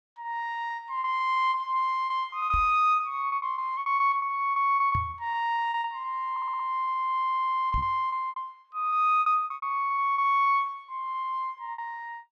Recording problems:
packet loss; 15% of the sound replaced, filled with repeated pitch periods
knock on the microphone; at 2.5 s, at 5 s and at 7.5 s; peak -2 dB vs average level
audio stuttering; at 6.5 s and at 7 s

